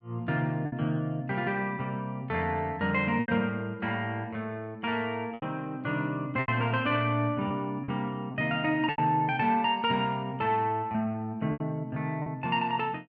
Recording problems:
packet loss; 5% of the sound replaced, filled with repeated pitch periods

